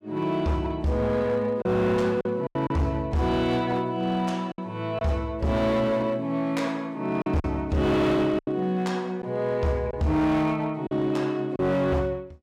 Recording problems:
distorted audio; hard clipping, signal-to-distortion ratio 10 dB
packet loss; 4% of the sound replaced, filled with silence

